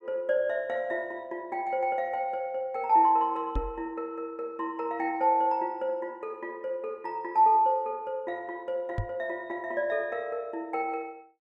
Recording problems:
microphone bump; at 3.5 s and at 9 s; peak +1 dB vs average level

